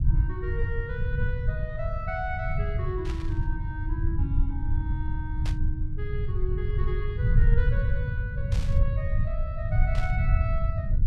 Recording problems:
low-frequency rumble; below 100 Hz, SNR -9 dB
burst of static; 4 times, first at 3 s; peak +1 dB vs average level

